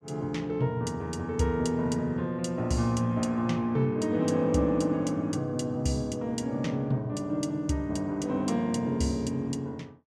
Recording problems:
none

